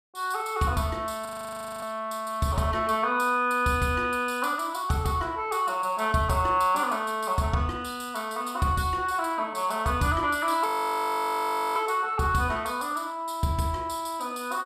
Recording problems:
audio freezing; at 1.5 s for 0.5 s and at 11 s for 1 s

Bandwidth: 14.5 kHz